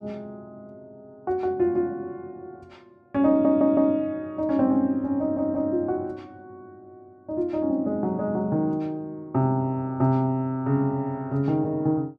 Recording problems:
stutter; at 3.5 s and at 5 s

